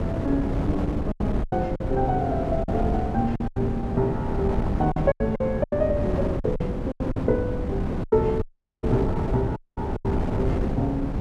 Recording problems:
wind noise; below 310 Hz, SNR 1 dB
lost packets; 9% of the sound replaced, filled with silence
dropout; at 8.5 s and at 9.5 s

